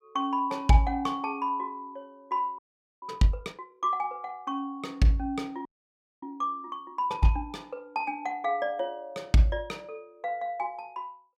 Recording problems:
frozen audio; at 2.5 s and at 5.5 s for 0.5 s

